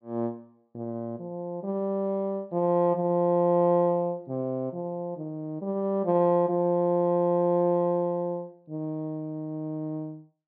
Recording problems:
treble cut off; nothing above 4.7 kHz

